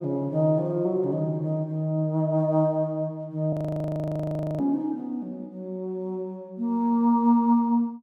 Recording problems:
audio freezing; at 3.5 s for 1 s

